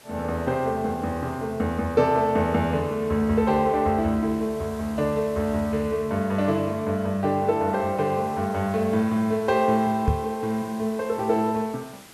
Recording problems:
hiss; slope -2 dB per octave, SNR 23 dB
knock on the microphone; at 10 s; peak +5 dB vs average level

